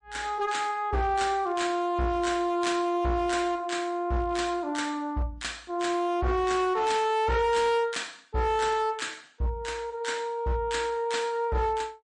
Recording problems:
codec artefacts; MP3, log-spectral distance 2 dB, nothing above 9 kHz
distorted audio; hard clipping, uneven, signal-to-distortion ratio 12 dB

